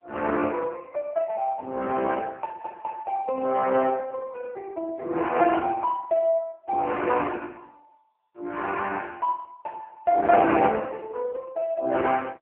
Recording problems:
telephone audio; 240 Hz to 3.1 kHz, AMR-NB

